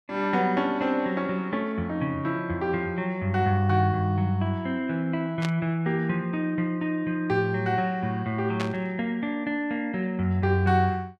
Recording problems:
static burst; at 5.5 s and at 8.5 s; peak -2 dB vs average level

